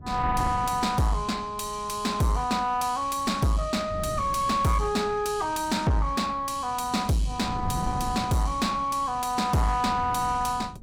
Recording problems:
distortion; soft clipping, signal-to-distortion ratio 10 dB
wind on the microphone; below 210 Hz, SNR 12 dB

